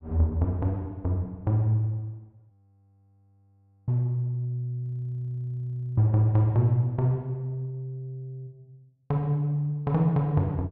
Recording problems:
frozen audio; at 2.5 s for 1.5 s and at 5 s for 1 s

